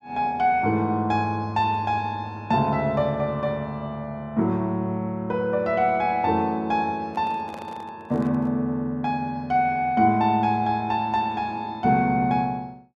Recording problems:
handling noise; from 7 to 8.5 s; peak -11 dB vs average level

